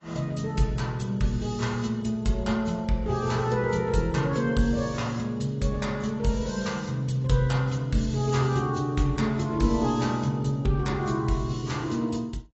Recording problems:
lossy codec; AAC, log-spectral distance 3 dB, nothing above 7.6 kHz

